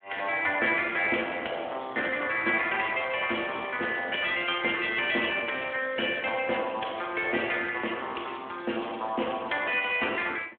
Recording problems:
phone line; 260 Hz to 3.3 kHz, Speex

